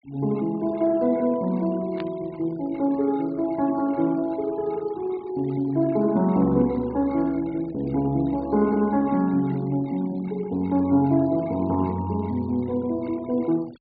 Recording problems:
treble missing; nothing above 4.7 kHz
denoising artefacts; signal-to-artefact ratio 25 dB
burst of static; at 2 s; peak -10 dB vs average level

